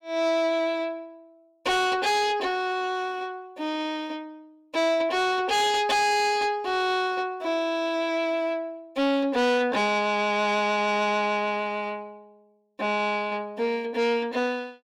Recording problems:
distorted audio; soft clipping, signal-to-distortion ratio 10 dB

